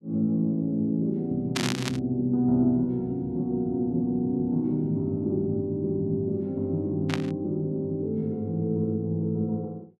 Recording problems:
static burst; at 1.5 s and at 7 s; peak +3 dB vs average level

